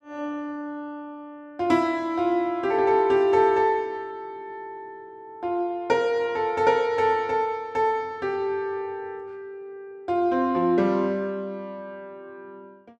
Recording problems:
none

